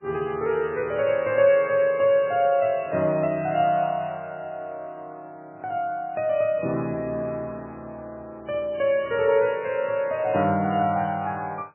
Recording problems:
codec artefacts; MP3, log-spectral distance 2 dB, nothing above 2.5 kHz

